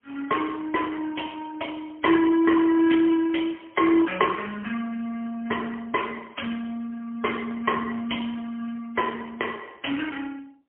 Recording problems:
phone line; 190 Hz to 3.2 kHz, AMR-NB, then MP3

